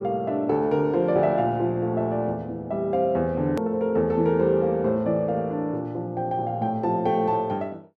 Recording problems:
hard cut with a click; at 3.5 s

